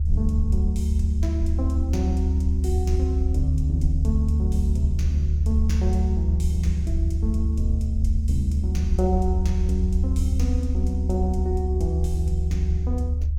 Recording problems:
rumble; below 76 Hz, strongest tone 74 Hz, SNR -5 dB

